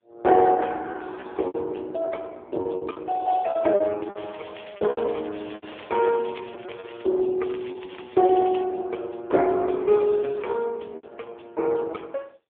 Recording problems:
telephone audio; 260 Hz to 3.4 kHz, AMR-NB
packet loss; 10% of the sound replaced, filled with repeated pitch periods
crackle; from 4 to 7 s and from 7.5 to 8.5 s; loose cable, SNR 22 dB

